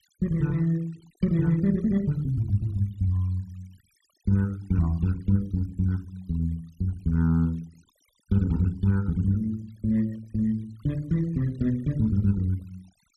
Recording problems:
noise reduction artefacts; signal-to-artefact ratio 27 dB

